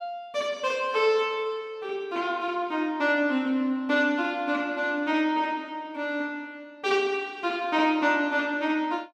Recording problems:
none

